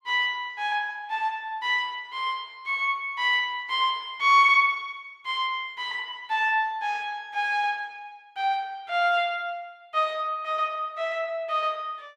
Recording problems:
none

